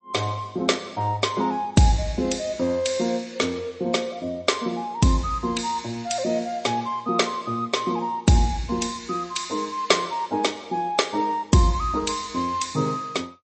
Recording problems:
codec artefacts; MP3, log-spectral distance 4 dB, nothing above 8.2 kHz

